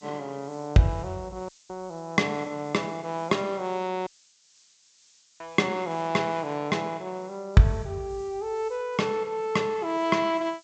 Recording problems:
low-pass filter; nothing above 8 kHz
hiss; SNR 27 dB
audio cutting out; at 1.5 s and at 4 s for 1.5 s

